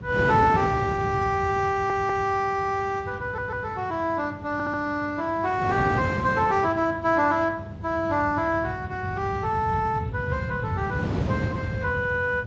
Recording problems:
lossy compression; Speex, then AAC, log-spectral distance 3 dB
mains hum; 50 Hz, harmonics up to 700 Hz, SNR 17 dB
rumble; below 160 Hz, SNR 10 dB
wind on the microphone; below 470 Hz, SNR 6 dB
audio stuttering; at 1.5 s, at 3 s and at 4.5 s

